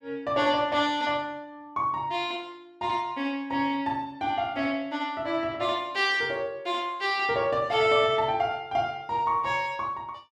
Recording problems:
none

